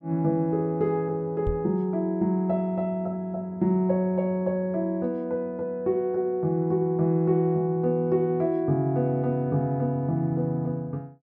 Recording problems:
microphone thump; at 1.5 s; peak -2 dB vs average level

